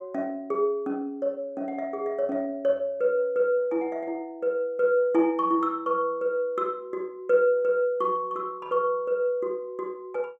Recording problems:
none

